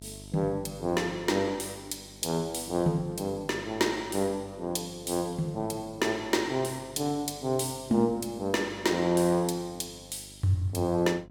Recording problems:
electrical hum; 50 Hz, harmonics up to 1 kHz, SNR 22 dB

